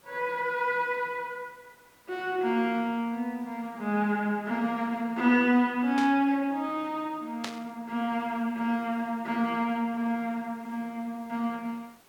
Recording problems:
background hiss; slope -3 dB per octave, SNR 29 dB
burst of static; at 6 s and at 7.5 s; peak -2 dB vs average level

